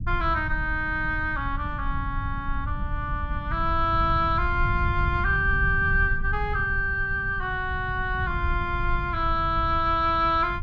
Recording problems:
rumble; below 94 Hz, SNR 6 dB

